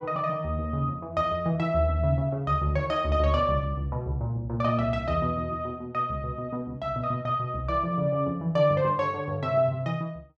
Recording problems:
none

